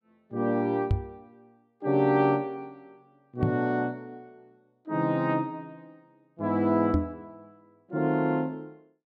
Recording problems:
knock on the microphone; at 1 s, at 3.5 s and at 7 s; peak +6 dB vs average level

